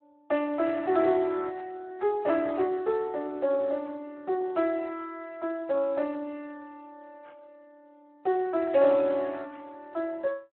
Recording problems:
telephone audio; 300 Hz to 3 kHz, Speex

